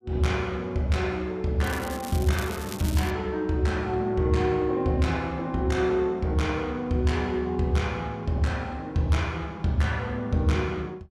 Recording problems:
crackle; from 1.5 to 3 s; loose cable, SNR 14 dB

